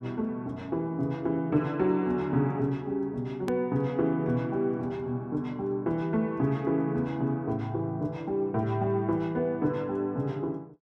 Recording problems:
hard cut with a click; at 3.5 s

